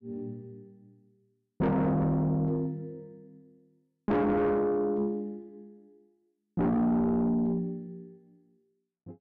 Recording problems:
distortion; soft clipping, signal-to-distortion ratio 8 dB

